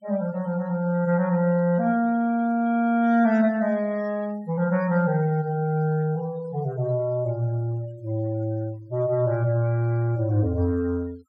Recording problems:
denoising artefacts; signal-to-artefact ratio 25 dB

